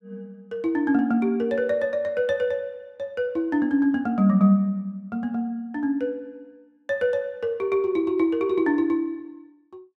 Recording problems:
none

